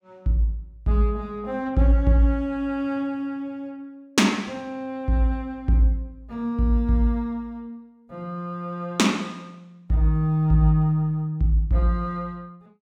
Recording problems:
none

